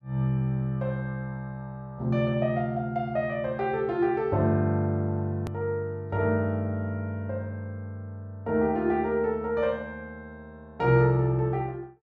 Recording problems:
hard cut with a click; at 5.5 s

